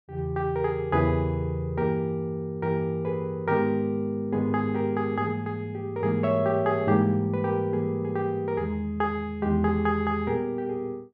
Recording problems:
none

